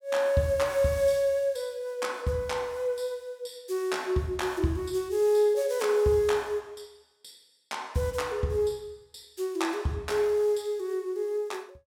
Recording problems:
none

